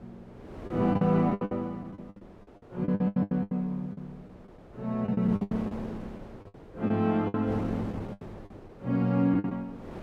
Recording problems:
wind noise; below 580 Hz, SNR 16 dB
packet loss; 16% of the sound replaced, filled with the last packet

